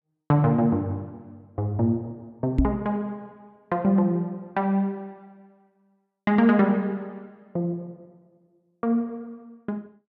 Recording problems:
microphone thump; at 2.5 s; peak +8 dB vs average level

